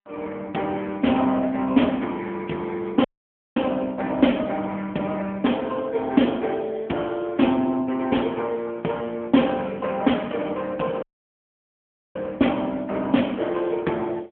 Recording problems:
telephone audio; 130 Hz to 3.4 kHz, AMR-NB
audio cutting out; at 3 s for 0.5 s and at 11 s for 1 s

